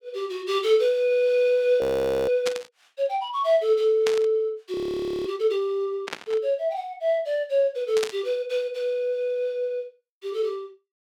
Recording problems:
audio freezing; at 2 s and at 4.5 s for 0.5 s
static burst; 4 times, first at 2.5 s; peak -1 dB vs average level

